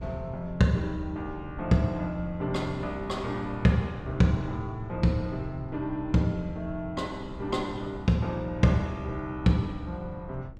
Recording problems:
wind noise; below 130 Hz, SNR 16 dB

